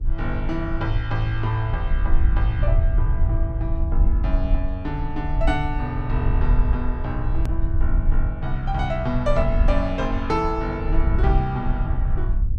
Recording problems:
rumble; below 62 Hz, SNR -2 dB
edit click; at 7.5 s

